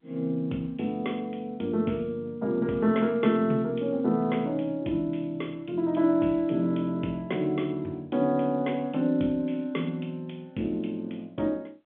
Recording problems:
telephone audio; 130 Hz to 3.5 kHz, G.711

